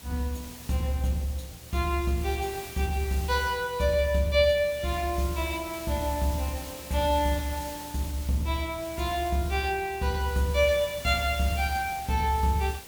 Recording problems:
background hiss; SNR 14 dB

